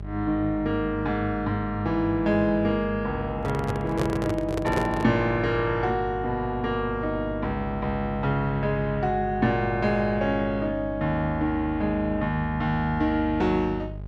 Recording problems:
hum; 50 Hz, harmonics up to 650 Hz, SNR 11 dB
microphone handling noise; from 3.5 to 5 s; peak +2 dB vs average level

